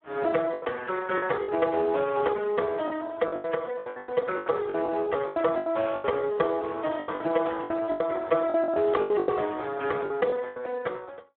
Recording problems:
telephone audio; 300 Hz to 2 kHz, Speex
lost packets; 14% of the sound replaced, filled with the last packet

